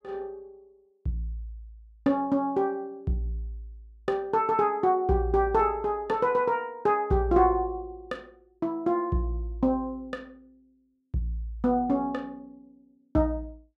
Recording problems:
none

